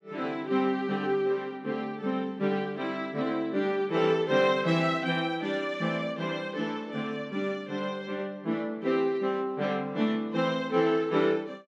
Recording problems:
none

